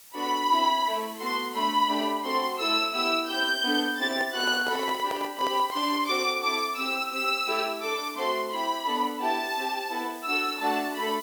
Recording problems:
hiss; slope +2 dB per octave, SNR 19 dB
microphone handling noise; from 4 to 6 s; peak -4 dB vs average level

